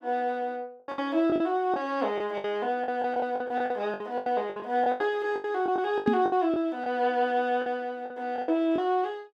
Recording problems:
lost packets; 14% of the sound replaced, filled with the last packet
knock on the microphone; at 6 s; peak +6 dB vs average level

